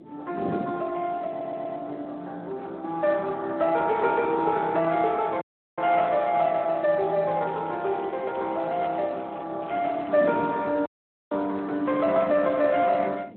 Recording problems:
phone line; 240 Hz to 3.5 kHz, Speex
wind noise; below 410 Hz, SNR 17 dB
stutter; at 1.5 s
dropout; at 5.5 s and at 11 s
crackle; from 7.5 to 9.5 s and at 9.5 s; loose cable, SNR 27 dB

